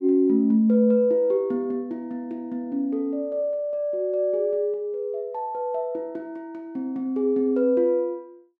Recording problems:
none

